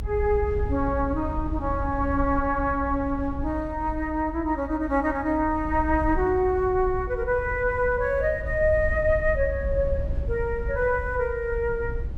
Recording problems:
low-frequency rumble; below 80 Hz, SNR 8 dB

